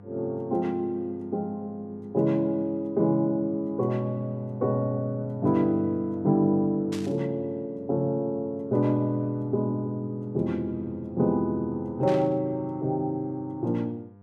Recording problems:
hum; 50 Hz, harmonics up to 1.2 kHz, SNR 23 dB
burst of static; at 7 s and at 12 s; peak -8 dB vs average level

